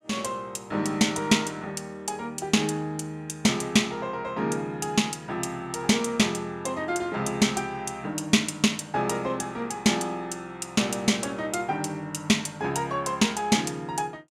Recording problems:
none

